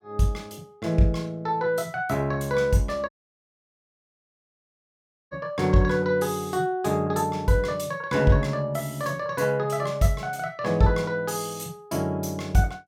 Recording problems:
dropout; at 3 s for 2 s

